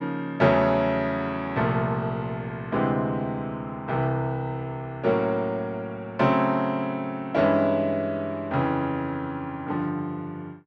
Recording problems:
none

